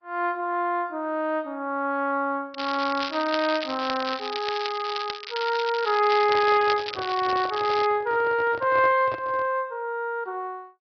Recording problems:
treble cut off; nothing above 5.5 kHz
lossy codec; Opus, log-spectral distance 4 dB
crackling; from 2.5 to 8 s; loose cable, SNR 9 dB
microphone handling noise; from 6 to 9.5 s; peak -8 dB vs average level

